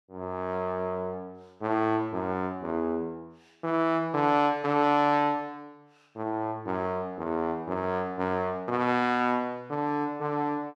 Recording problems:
none

